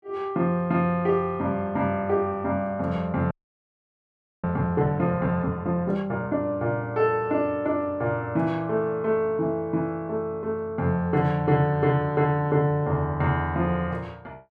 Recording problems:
frozen audio; at 3.5 s for 1 s

